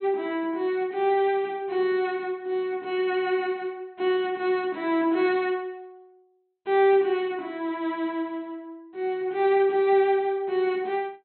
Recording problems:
low-pass filter; nothing above 4.2 kHz

